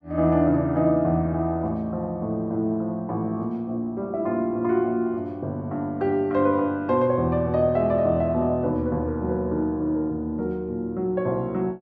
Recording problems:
none

